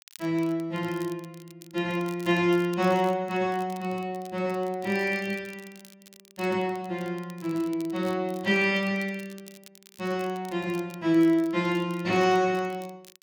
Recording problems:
crackling; vinyl, SNR 24 dB

